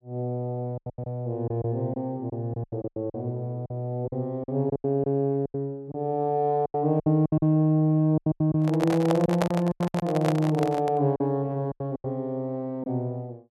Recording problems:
lost packets; 13% of the sound replaced, filled with silence
microphone handling noise; from 8.5 to 11 s; peak +4 dB vs average level

